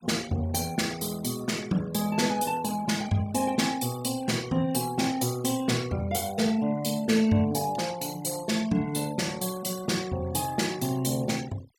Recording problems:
denoising artefacts; signal-to-artefact ratio 19 dB

